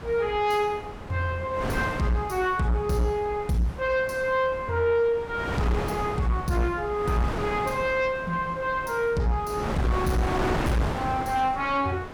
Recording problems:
distortion; soft clipping, signal-to-distortion ratio 12 dB
wind noise; below 1 kHz, SNR 7 dB

